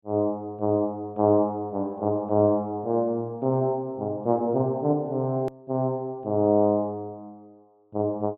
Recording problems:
low-pass filter; nothing above 4 kHz
hard cut with a click; at 5.5 s

